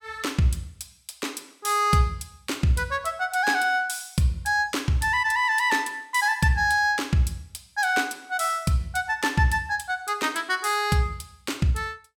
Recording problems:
none

